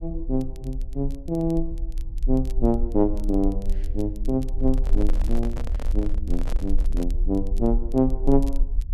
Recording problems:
low-frequency rumble; below 42 Hz, strongest tone 22 Hz, SNR 3 dB
crackling; vinyl, SNR 27 dB
microphone handling noise; from 4.5 to 7 s; peak -6 dB vs average level

